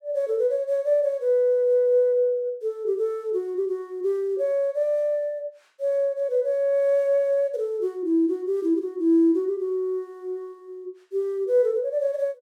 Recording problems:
none

